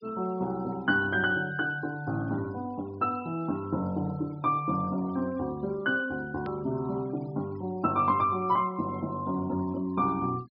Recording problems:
treble missing; nothing above 5.5 kHz
noise reduction artefacts; signal-to-artefact ratio 23 dB
edit click; at 6.5 s

